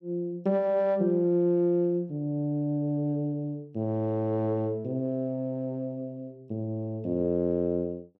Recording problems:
none

